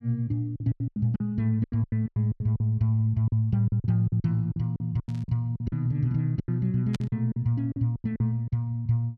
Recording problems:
packet loss; 16% of the sound replaced, filled with silence
static burst; at 5 s and at 7 s; peak -8 dB vs average level

